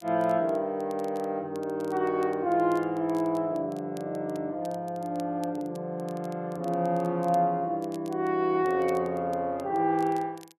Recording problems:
crackling; vinyl, SNR 27 dB

